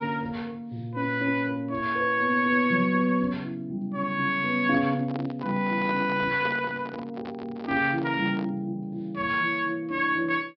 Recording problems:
treble cut off; nothing above 5.5 kHz
handling noise; from 4.5 to 8.5 s; peak -6 dB vs average level

